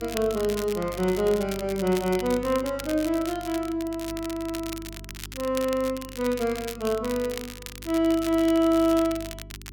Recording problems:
electrical hum; 50 Hz, harmonics up to 400 Hz, SNR 18 dB
crackle; vinyl, SNR 14 dB

